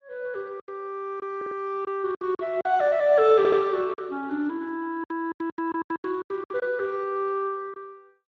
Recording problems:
lossy compression; Speex, log-spectral distance 2 dB
lost packets; 12% of the sound replaced, filled with silence
stutter; at 1.5 s and at 3.5 s

